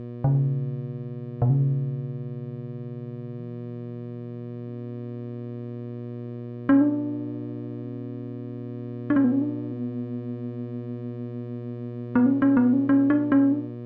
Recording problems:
hum; 60 Hz, harmonics up to 720 Hz, SNR 12 dB

